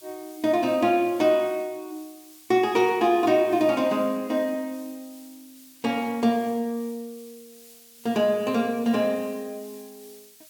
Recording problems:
background hiss; slope +4 dB per octave, SNR 24 dB

